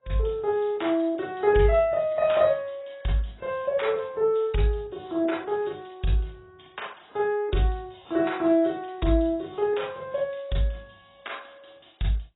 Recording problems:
lossy codec; AAC, log-spectral distance 6 dB, nothing above 3.9 kHz

